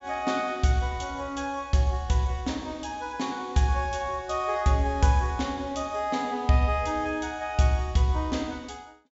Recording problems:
treble missing; nothing above 8 kHz

